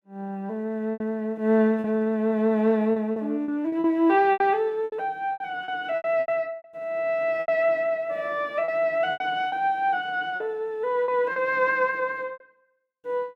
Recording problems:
packet loss; 10% of the sound replaced, filled with repeated pitch periods

